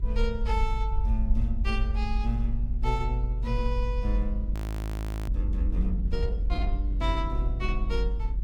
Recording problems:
rumble; below 50 Hz, strongest tone 46 Hz, SNR -4 dB
wind on the microphone; below 120 Hz, SNR 7 dB
audio freezing; at 4.5 s for 0.5 s

